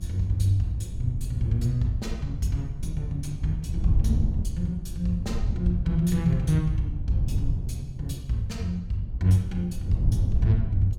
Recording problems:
hum; 50 Hz, harmonics up to 1.3 kHz, SNR 32 dB
wind on the microphone; below 100 Hz, SNR 4 dB

